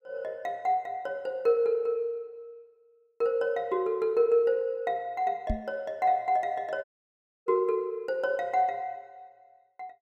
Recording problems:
microphone thump; at 5.5 s; peak +2 dB vs average level
dropout; at 7 s for 0.5 s

